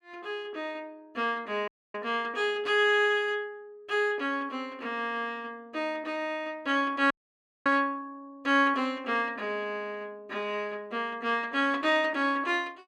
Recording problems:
dropout; at 1.5 s and at 7 s for 0.5 s

